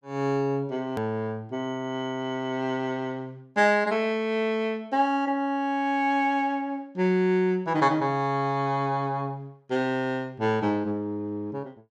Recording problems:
hard cut with a click; at 1 s

